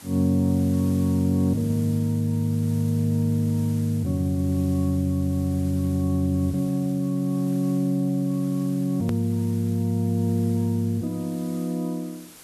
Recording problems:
hiss; slope -2 dB per octave, SNR 22 dB
edit click; at 9 s

